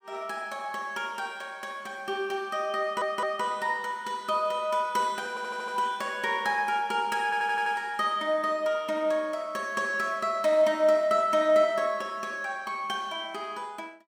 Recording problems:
stutter; at 3 s, at 5.5 s and at 7 s

